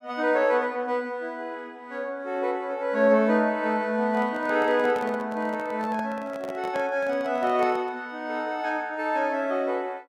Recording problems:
microphone handling noise; from 4 to 8 s; peak -6 dB vs average level

